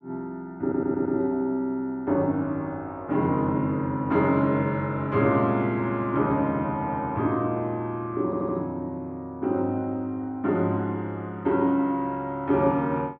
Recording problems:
audio stuttering; at 0.5 s and at 8.5 s

